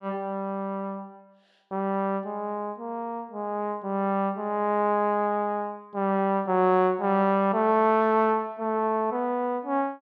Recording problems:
none

